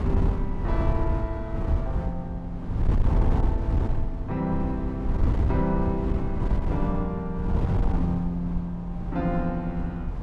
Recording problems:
wind noise; below 110 Hz, SNR -3 dB

